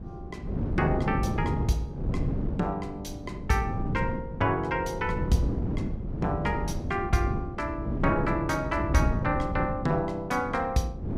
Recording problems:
wind on the microphone; below 240 Hz, SNR 3 dB

